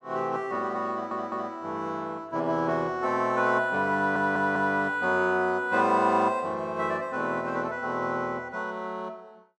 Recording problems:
stutter; at 1 s and at 4 s

